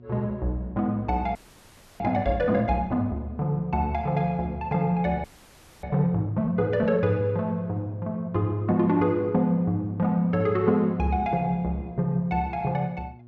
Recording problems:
hum; 60 Hz, harmonics up to 720 Hz, SNR 23 dB
audio freezing; at 1.5 s for 0.5 s and at 5 s for 0.5 s

